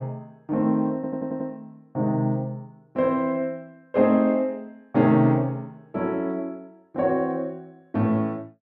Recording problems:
stutter; at 1 s

